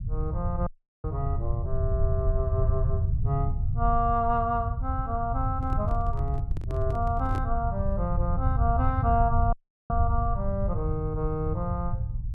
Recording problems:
low-frequency rumble; below 100 Hz, SNR -1 dB
audio cutting out; at 0.5 s and at 9.5 s
handling noise; from 5.5 to 7.5 s; peak -4 dB vs average level

